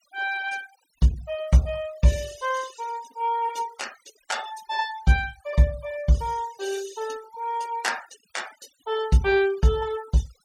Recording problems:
noise reduction artefacts; signal-to-artefact ratio 19 dB

